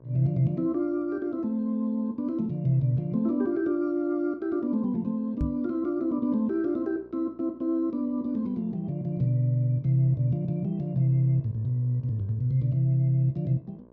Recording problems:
hum; 60 Hz, harmonics up to 1.2 kHz, SNR 29 dB
microphone thump; at 5.5 s; peak +1 dB vs average level

